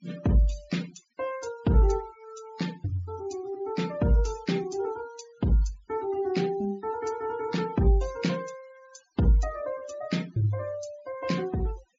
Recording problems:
treble cut off; nothing above 7.2 kHz
noise reduction artefacts; signal-to-artefact ratio 19 dB

